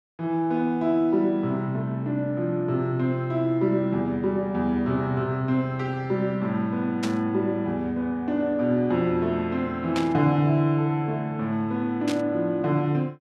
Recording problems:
burst of static; at 7 s, at 10 s and at 12 s; peak -3 dB vs average level

